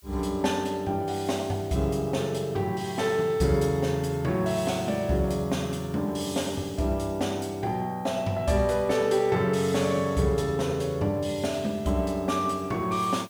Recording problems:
background hiss; slope +2 dB per octave, SNR 27 dB

